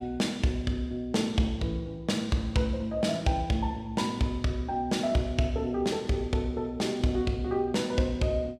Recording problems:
none

